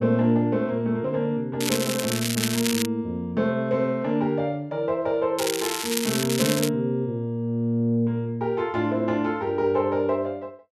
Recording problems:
crackle; from 1.5 to 3 s and from 5.5 to 6.5 s; loose cable, SNR 3 dB

